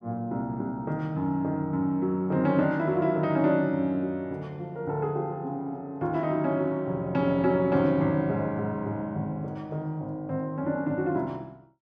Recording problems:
none

